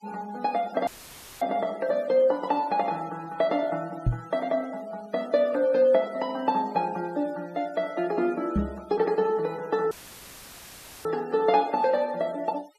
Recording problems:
noise reduction artefacts; signal-to-artefact ratio 24 dB
audio cutting out; at 1 s for 0.5 s and at 10 s for 1 s; filled with static
microphone thump; at 4 s and at 8.5 s; peak +5 dB vs average level

